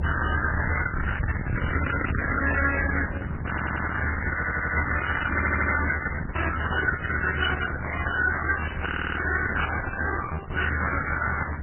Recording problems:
codec artefacts; Opus, then MP3, log-spectral distance 6 dB, nothing above 3 kHz
distortion; hard clipping, signal-to-distortion ratio 6 dB
rumble; below 1.5 kHz, SNR 4 dB
wind on the microphone; below 510 Hz, SNR 15 dB
audio stuttering; 4 times, first at 3.5 s

